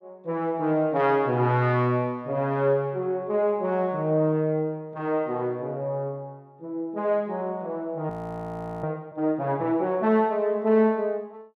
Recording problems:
audio freezing; at 8 s for 0.5 s

